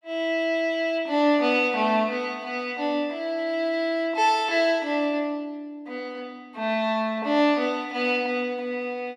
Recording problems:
none

